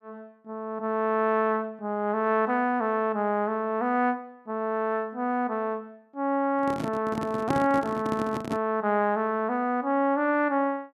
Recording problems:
microphone handling noise; from 6.5 to 8.5 s; peak +1 dB vs average level

